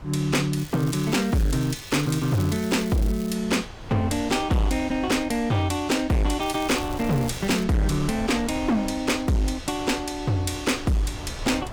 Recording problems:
distortion; hard clipping, signal-to-distortion ratio 8 dB
wind noise; below 540 Hz, SNR 15 dB
crackle; from 0.5 to 3.5 s and from 6.5 to 7.5 s; loose cable, SNR 17 dB

